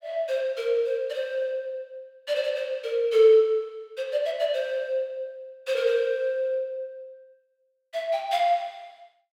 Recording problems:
none

